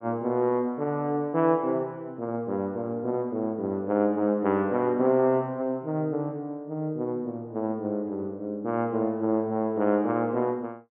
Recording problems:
treble cut off; nothing above 3.3 kHz

